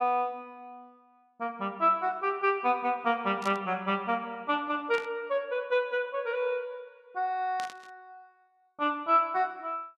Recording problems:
static burst; at 3.5 s, at 5 s and at 7.5 s; peak -7 dB vs average level

